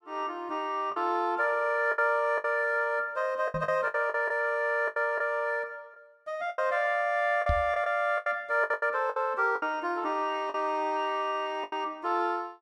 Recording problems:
lost packets; 9% of the sound replaced, filled with the last packet
microphone thump; at 3.5 s and at 7.5 s; peak +2 dB vs average level

